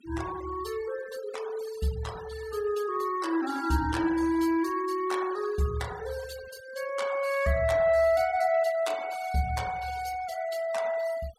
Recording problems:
denoising artefacts; signal-to-artefact ratio 17 dB

